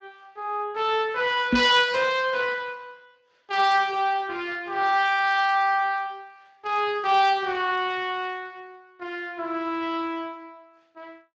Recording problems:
lossy compression; Speex, log-spectral distance 3 dB, nothing above 7.6 kHz
microphone bump; at 1.5 s; peak +5 dB vs average level

